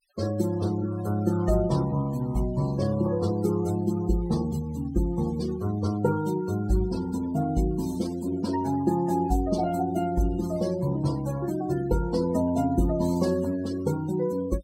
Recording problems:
noise reduction artefacts; signal-to-artefact ratio 17 dB

